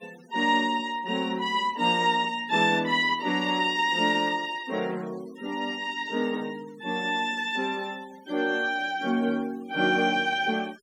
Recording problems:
noise reduction artefacts; signal-to-artefact ratio 24 dB

